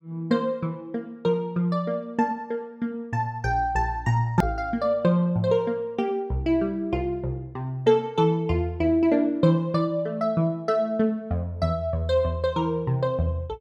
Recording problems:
click at an edit; at 4.5 s

